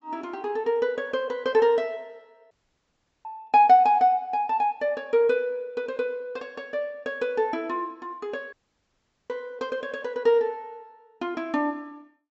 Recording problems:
treble missing; nothing above 7.7 kHz
audio cutting out; at 2.5 s for 0.5 s and at 8.5 s for 1 s

